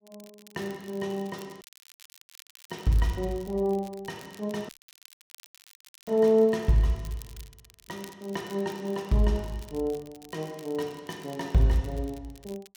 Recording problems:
crackling; vinyl, SNR 23 dB
dropout; at 1.5 s for 1 s and at 4.5 s for 1.5 s

